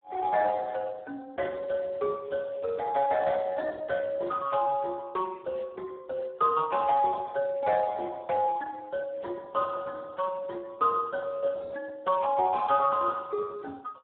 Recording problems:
telephone audio; 300 Hz to 2 kHz, Speex

